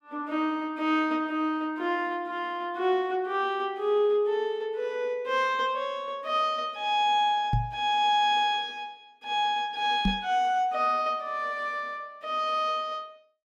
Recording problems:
microphone thump; at 7.5 s and at 10 s; peak +4 dB vs average level

